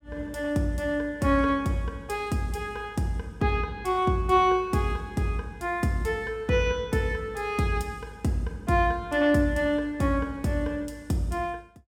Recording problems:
none

